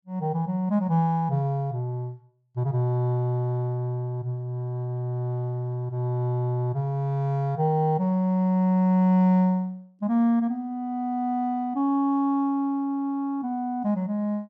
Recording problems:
none

